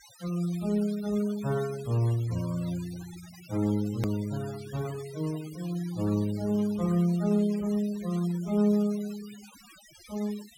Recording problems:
noise reduction artefacts; signal-to-artefact ratio 19 dB
click at an edit; at 4 s

